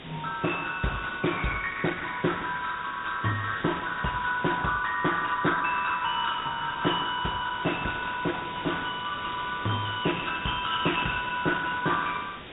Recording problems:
treble cut off; nothing above 3.2 kHz
lossy codec; Opus, log-spectral distance 5 dB
hiss; SNR 12 dB

